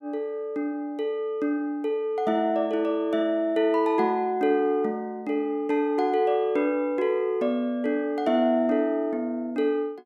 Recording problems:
none

